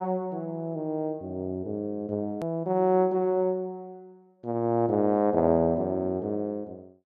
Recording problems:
click at an edit; at 2.5 s

